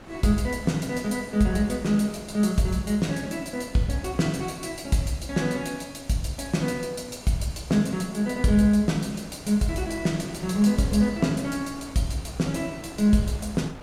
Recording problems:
wind on the microphone; below 890 Hz, SNR 19 dB

